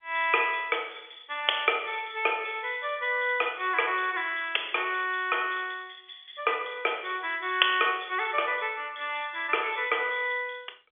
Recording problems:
telephone audio; 320 Hz to 3.5 kHz, G.711

